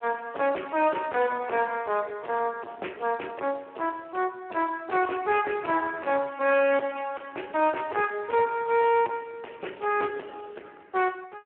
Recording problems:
phone line; 280 Hz to 2.8 kHz, Speex
distorted audio; soft clipping, signal-to-distortion ratio 5 dB

